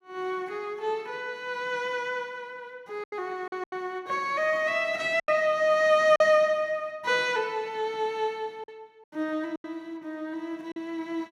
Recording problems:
packet loss; 4% of the sound replaced, filled with silence

